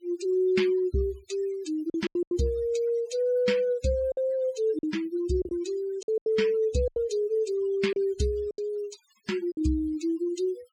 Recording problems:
denoising artefacts; signal-to-artefact ratio 19 dB
packet loss; 7% of the sound replaced, filled with silence

